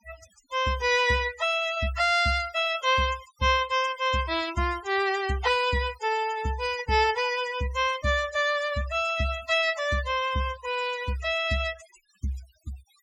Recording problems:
noise reduction artefacts; signal-to-artefact ratio 16 dB

